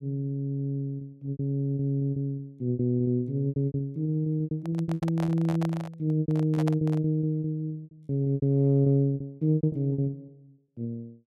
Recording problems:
lost packets; 19% of the sound replaced, filled with repeated pitch periods
handling noise; from 4.5 to 7 s; peak -4 dB vs average level

